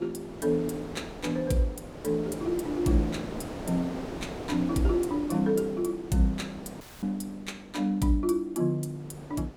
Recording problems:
wind on the microphone; below 740 Hz, SNR 11 dB
dropout; at 7 s

